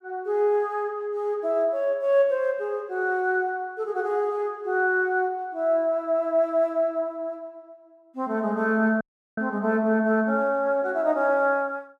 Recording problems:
audio cutting out; at 9 s

